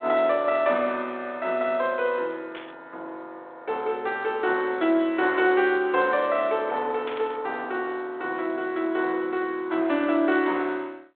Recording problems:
phone line; 240 Hz to 3.6 kHz, G.726
static burst; at 2.5 s and at 7 s; peak -8 dB vs average level

